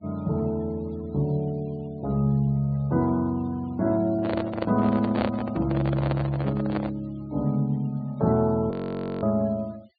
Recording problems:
treble cut off; nothing above 4.6 kHz
denoising artefacts; signal-to-artefact ratio 26 dB
handling noise; from 4 to 7 s; peak +2 dB vs average level
audio freezing; at 8.5 s for 0.5 s

